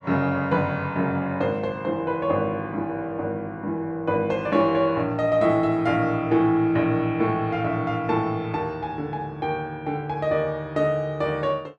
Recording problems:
none

